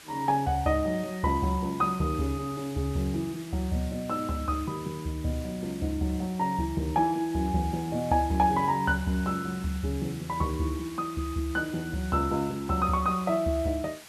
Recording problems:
hiss; slope 0 dB per octave, SNR 18 dB

